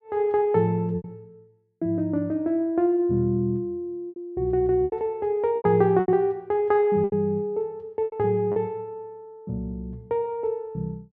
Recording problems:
lost packets; 6% of the sound replaced, filled with repeated pitch periods

